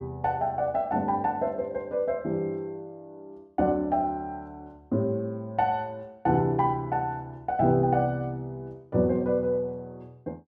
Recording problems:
none

